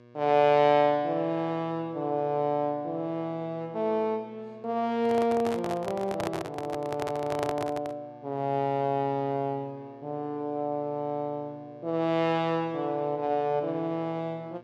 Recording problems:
hum; 60 Hz, harmonics up to 2.3 kHz, SNR 25 dB
handling noise; from 5 to 8 s; peak 0 dB vs average level

